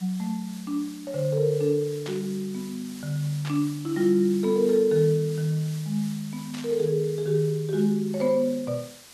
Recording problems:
hiss; slope +1 dB per octave, SNR 19 dB
static burst; at 2 s, at 3.5 s and at 6.5 s; peak -8 dB vs average level

